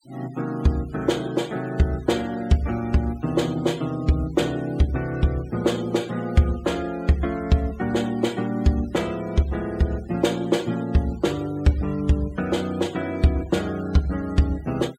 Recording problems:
denoising artefacts; signal-to-artefact ratio 22 dB

